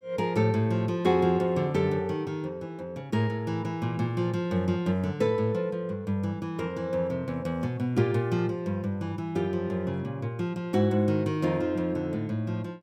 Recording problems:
none

